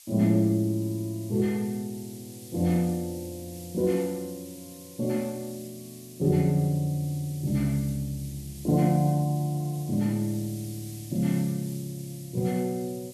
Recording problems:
background hiss; SNR 18 dB

